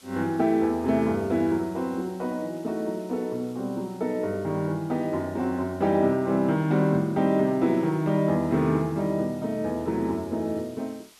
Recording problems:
hiss; slope +1 dB per octave, SNR 27 dB

